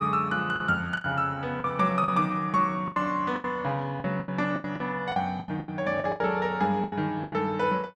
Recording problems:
packet loss; 14% of the sound replaced, filled with the last packet

